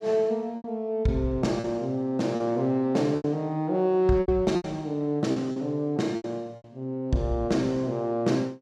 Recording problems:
packet loss; 8% of the sound replaced, filled with repeated pitch periods

